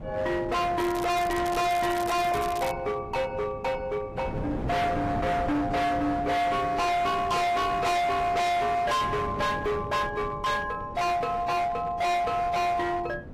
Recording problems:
lossy compression; AAC, log-spectral distance 2 dB, nothing above 15.1 kHz
distortion; hard clipping, uneven, signal-to-distortion ratio 6 dB
wind noise; below 540 Hz, SNR 12 dB
crackling; from 1 to 2.5 s; loose cable, SNR 13 dB

